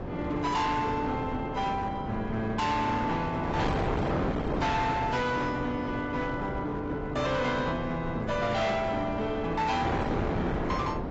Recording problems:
lossy compression; AAC, log-spectral distance 2 dB, nothing above 7.6 kHz
distorted audio; hard clipping, signal-to-distortion ratio 7 dB
wind noise; below 700 Hz, SNR 4 dB

